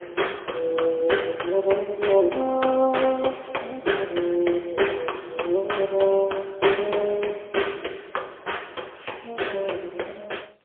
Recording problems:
phone line; 300 Hz to 3.4 kHz, AMR-NB, then MP3

